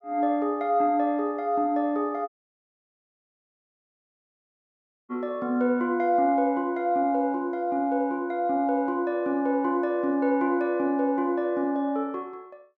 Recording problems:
audio cutting out; at 2.5 s for 3 s

